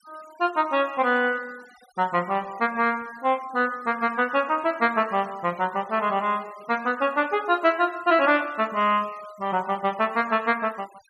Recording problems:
noise reduction artefacts; signal-to-artefact ratio 24 dB

